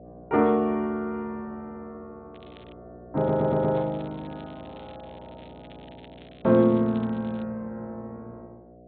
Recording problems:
treble missing; nothing above 4 kHz
hum; 60 Hz, harmonics up to 720 Hz, SNR 22 dB
crackle; at 2.5 s and from 3 to 7.5 s; loose cable, SNR 29 dB
stutter; at 3 s

